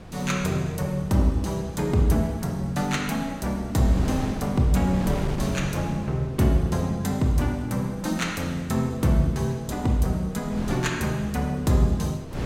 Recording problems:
wind noise; below 380 Hz, SNR 12 dB

